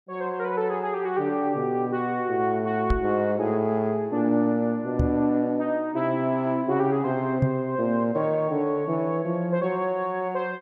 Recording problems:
knock on the microphone; at 3 s, at 5 s and at 7.5 s; peak +5 dB vs average level

